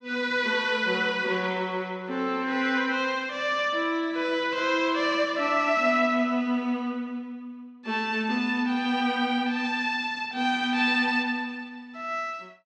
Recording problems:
none

